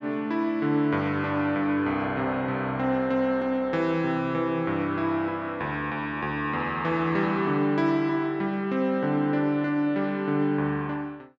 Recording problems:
none

